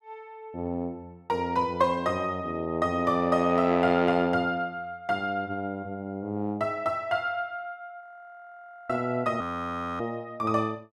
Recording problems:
audio freezing; at 8 s for 1 s and at 9.5 s for 0.5 s

